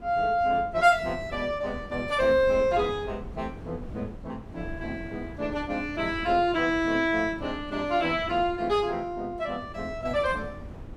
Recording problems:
wind noise; below 260 Hz, SNR 16 dB

